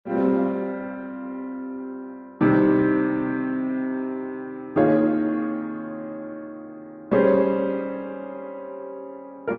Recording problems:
lossy compression; Opus, log-spectral distance 2 dB

